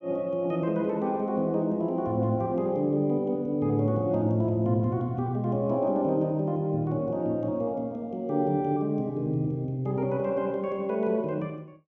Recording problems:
none

